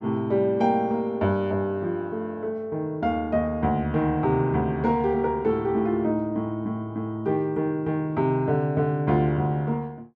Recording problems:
none

